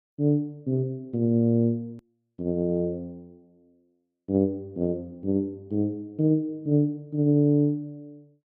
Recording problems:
edit click; at 2 s

